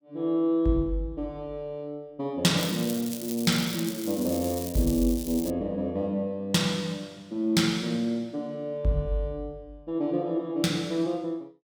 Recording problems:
crackle; from 2.5 to 5.5 s; loose cable, SNR 9 dB

